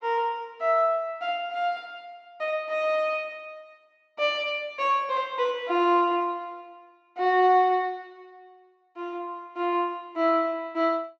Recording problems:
treble cut off; nothing above 8 kHz

